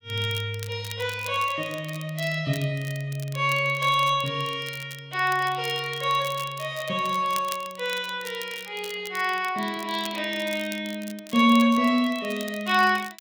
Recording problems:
crackle; vinyl, SNR 17 dB

